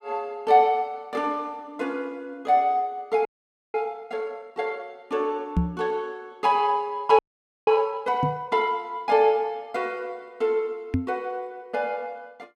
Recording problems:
frozen audio; at 3.5 s and at 7 s
knock on the microphone; at 5.5 s, at 8 s and at 11 s; peak +6 dB vs average level

